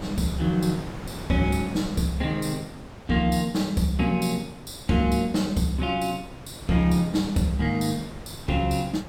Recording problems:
wind noise; below 720 Hz, SNR 15 dB

